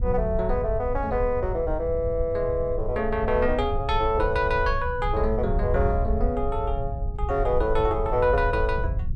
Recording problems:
low-frequency rumble; below 76 Hz, SNR 5 dB

